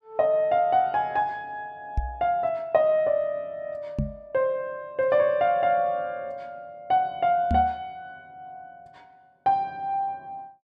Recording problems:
microphone bump; at 2 s, at 4 s and at 7.5 s; peak +2 dB vs average level

